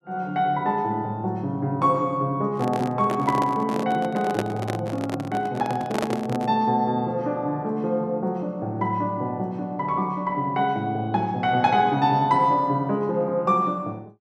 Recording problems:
microphone handling noise; from 2.5 to 6.5 s; peak +3 dB vs average level

